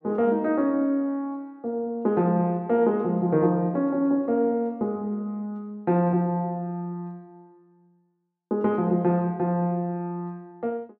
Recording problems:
none

